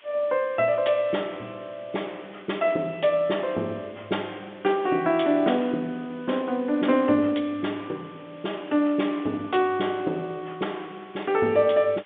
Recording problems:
phone line; 220 Hz to 3.5 kHz, G.711
hiss; SNR 27 dB

